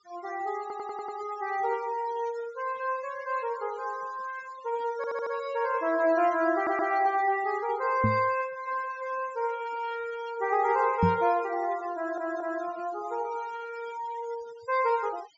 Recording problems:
treble cut off; nothing above 7.3 kHz
noise reduction artefacts; signal-to-artefact ratio 18 dB
stutter; 4 times, first at 0.5 s
knock on the microphone; at 8 s and at 11 s; peak +7 dB vs average level

